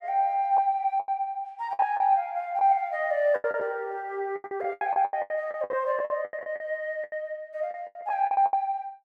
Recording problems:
packet loss; 16% of the sound replaced, filled with the last packet

